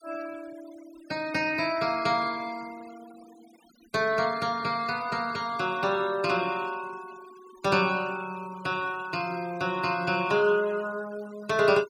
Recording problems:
denoising artefacts; signal-to-artefact ratio 20 dB

